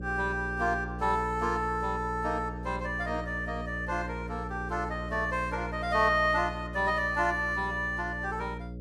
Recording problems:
electrical hum; 60 Hz, harmonics up to 600 Hz, SNR 9 dB

